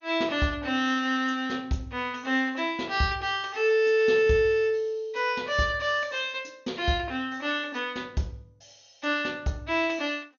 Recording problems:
lossy compression; MP2, log-spectral distance 3 dB, nothing above 6.7 kHz

